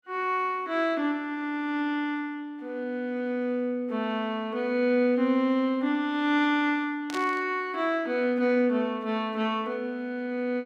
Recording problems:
burst of static; at 7 s; peak -6 dB vs average level

